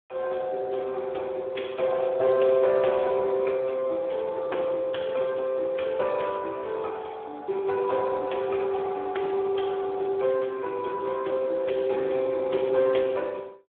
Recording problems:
telephone audio; 280 Hz to 3.4 kHz, Speex

